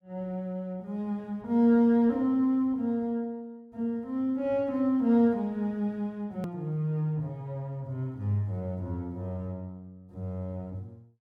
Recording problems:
hard cut with a click; at 6.5 s

